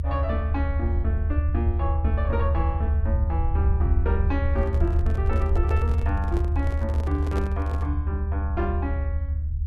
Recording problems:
rumble; below 78 Hz, strongest tone 76 Hz, SNR -7 dB
handling noise; from 4.5 to 8 s; peak +1 dB vs average level

